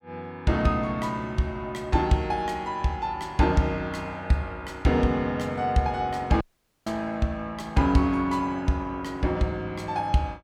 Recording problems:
audio cutting out; at 6.5 s

